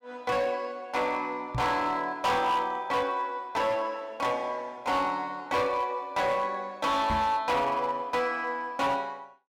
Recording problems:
distorted audio; hard clipping, signal-to-distortion ratio 10 dB
microphone thump; at 1.5 s and at 7 s; peak 0 dB vs average level

